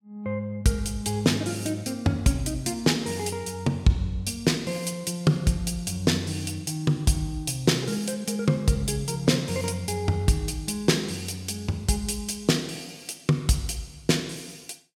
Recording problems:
none

